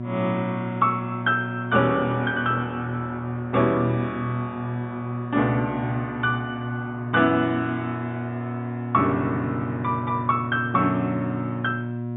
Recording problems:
treble missing; nothing above 4 kHz
electrical hum; 60 Hz, harmonics up to 960 Hz, SNR 6 dB

